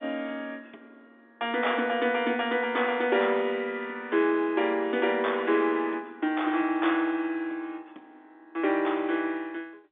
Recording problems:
phone line; 260 Hz to 3.6 kHz, G.711

